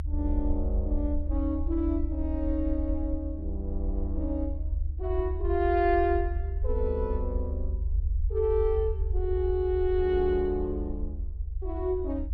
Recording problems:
low-frequency rumble; below 74 Hz, SNR 2 dB

